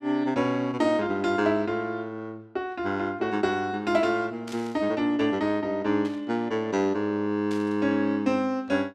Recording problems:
burst of static; at 4.5 s, at 6 s and at 7.5 s; peak -11 dB vs average level

